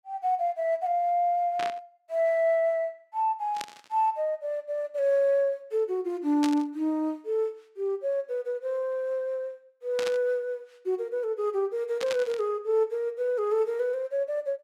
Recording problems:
burst of static; 5 times, first at 1.5 s; peak -2 dB vs average level

